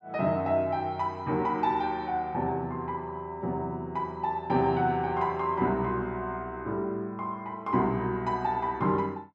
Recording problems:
none

